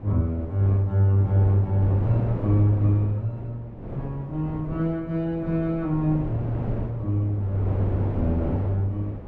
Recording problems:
wind on the microphone; below 370 Hz, SNR 10 dB

